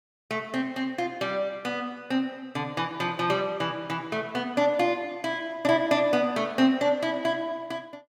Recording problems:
none

